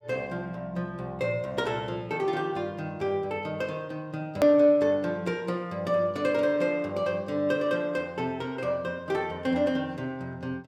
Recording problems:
edit click; at 4.5 s

